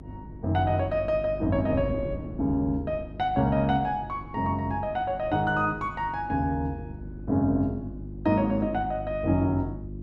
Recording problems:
electrical hum; 50 Hz, harmonics up to 350 Hz, SNR 13 dB
wind on the microphone; below 290 Hz, SNR 17 dB

